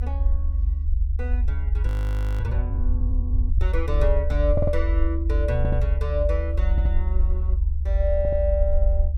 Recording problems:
rumble; below 72 Hz, SNR -5 dB
frozen audio; at 2 s for 0.5 s
stutter; 4 times, first at 4.5 s

